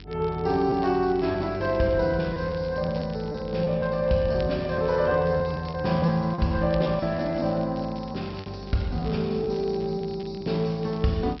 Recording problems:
treble missing; nothing above 5.4 kHz
lossy compression; MP2, then MP3, log-spectral distance 3 dB
hum; 50 Hz, harmonics up to 450 Hz, SNR 18 dB
crackle; vinyl, SNR 25 dB
packet loss; 7% of the sound replaced, filled with repeated pitch periods

